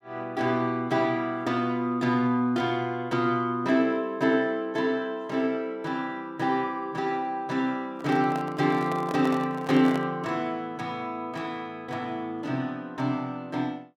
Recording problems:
microphone handling noise; from 8 to 10 s; peak -4 dB vs average level

